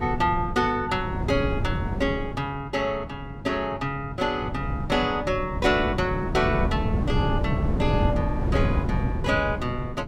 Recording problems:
hum; 50 Hz, harmonics up to 500 Hz, SNR 16 dB
wind noise; below 210 Hz, SNR 2 dB

